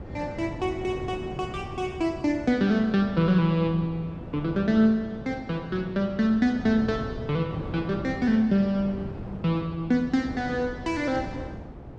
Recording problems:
wind on the microphone; below 380 Hz, SNR 13 dB

